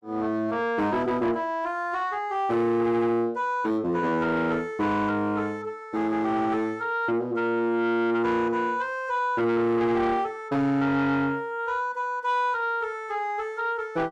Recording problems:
distortion; soft clipping, signal-to-distortion ratio 12 dB

